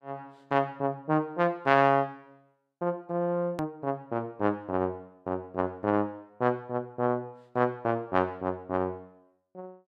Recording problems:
hard cut with a click; at 3.5 s

